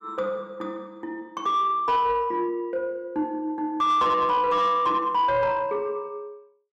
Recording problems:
distortion; soft clipping, signal-to-distortion ratio 11 dB

